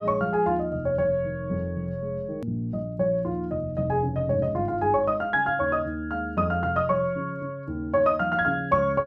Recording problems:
edit click; at 2.5 s

